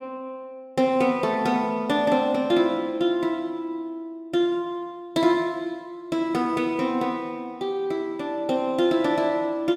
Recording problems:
none

